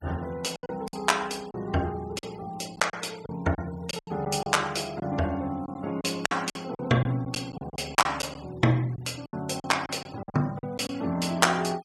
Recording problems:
noise reduction artefacts; signal-to-artefact ratio 22 dB
lost packets; 10% of the sound replaced, filled with silence

